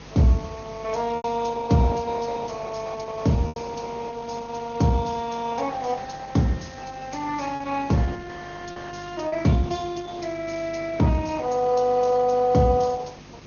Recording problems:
low-pass filter; nothing above 6.6 kHz
lossy compression; Opus, log-spectral distance 5 dB
hum; 50 Hz, harmonics up to 600 Hz, SNR 20 dB
hiss; slope -3 dB per octave, SNR 20 dB
packet loss; 2% of the sound replaced, filled with repeated pitch periods

